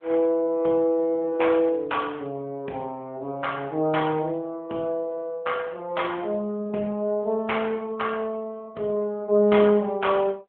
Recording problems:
phone line; 260 Hz to 3.4 kHz, AMR-NB

